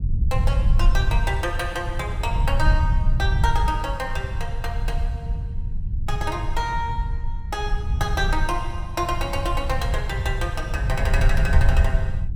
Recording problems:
rumble; below 78 Hz, SNR -3 dB

